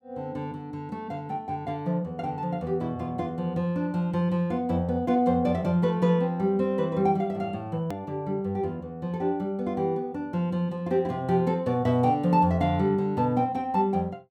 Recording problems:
hard cut with a click; at 8 s

